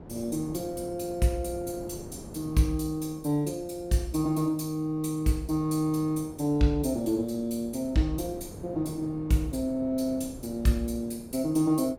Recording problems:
wind on the microphone; below 410 Hz, SNR 17 dB

